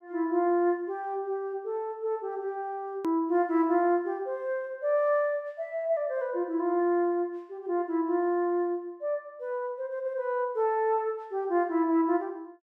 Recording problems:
click at an edit; at 3 s

